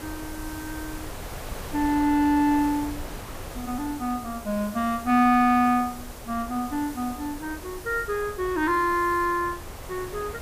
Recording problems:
background hiss; SNR 19 dB
wind on the microphone; below 880 Hz, SNR 15 dB

